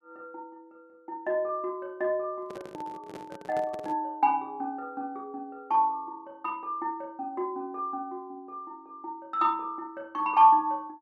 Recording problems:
microphone handling noise; from 2.5 to 4 s; peak -9 dB vs average level

